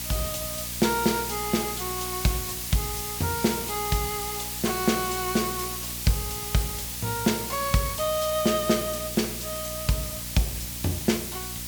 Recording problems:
hum; 60 Hz, harmonics up to 600 Hz, SNR 14 dB
background hiss; slope +2 dB per octave, SNR 3 dB

